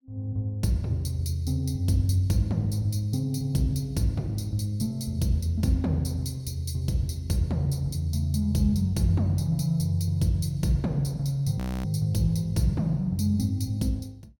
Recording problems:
frozen audio; at 12 s

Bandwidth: 17.5 kHz